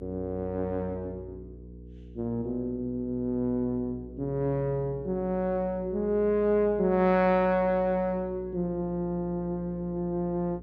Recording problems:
hum; 60 Hz, harmonics up to 480 Hz, SNR 17 dB

